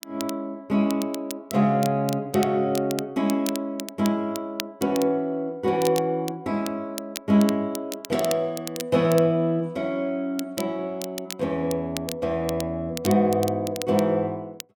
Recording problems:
crackle; vinyl, SNR 13 dB

